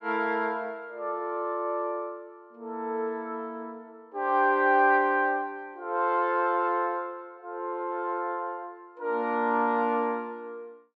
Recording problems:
none

